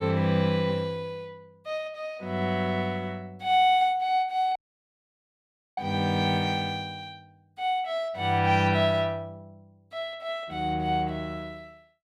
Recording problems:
audio cutting out; at 4.5 s for 1 s

